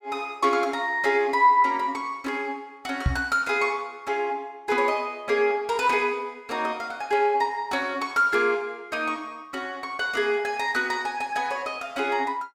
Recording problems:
microphone thump; at 3 s; peak +5 dB vs average level

